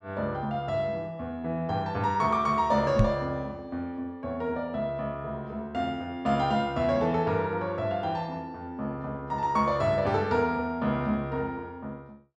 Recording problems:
microphone thump; at 3 s; peak +9 dB vs average level

